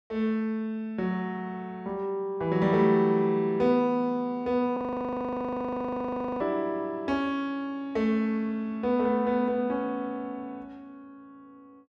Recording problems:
frozen audio; at 5 s for 1.5 s

